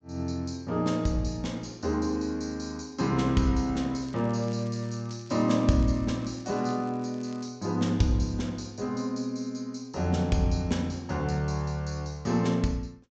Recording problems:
treble missing; nothing above 8 kHz
crackle; from 4 to 7.5 s; loose cable, SNR 27 dB

